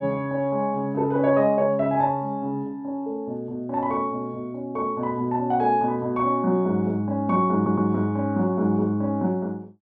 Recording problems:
stutter; at 7.5 s

